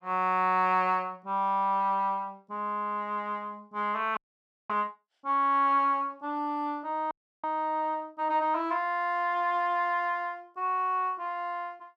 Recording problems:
audio freezing; at 4 s for 0.5 s and at 7 s

